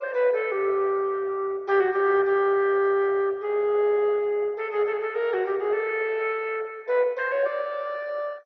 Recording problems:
lossy compression; MP2, log-spectral distance 3 dB, nothing above 6 kHz

